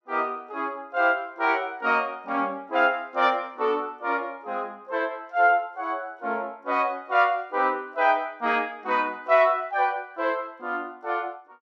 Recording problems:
none

